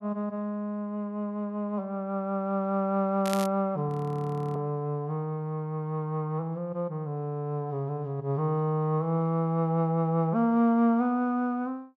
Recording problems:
crackling; at 3 s; loose cable, SNR 12 dB
frozen audio; at 4 s for 0.5 s

